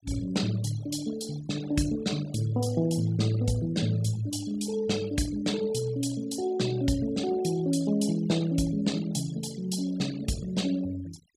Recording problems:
denoising artefacts; signal-to-artefact ratio 17 dB

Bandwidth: 15.5 kHz